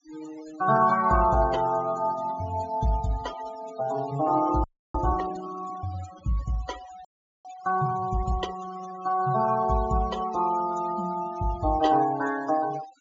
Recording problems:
treble cut off; nothing above 7.3 kHz
denoising artefacts; signal-to-artefact ratio 16 dB
frozen audio; at 4.5 s and at 7 s

